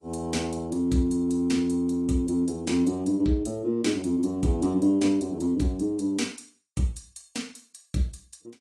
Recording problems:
codec artefacts; AAC, log-spectral distance 3 dB

